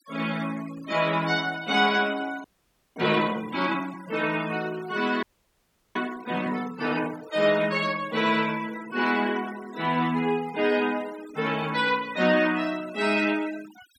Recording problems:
denoising artefacts; signal-to-artefact ratio 19 dB
audio freezing; at 2.5 s for 0.5 s and at 5 s for 0.5 s

